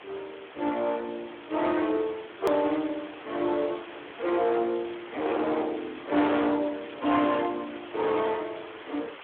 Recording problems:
phone line; 260 Hz to 3.5 kHz, Speex
distorted audio; hard clipping, uneven, signal-to-distortion ratio 7 dB
background hiss; SNR 16 dB
click at an edit; at 2.5 s

